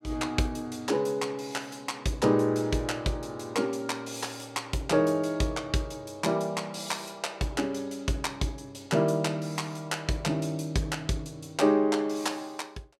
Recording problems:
none

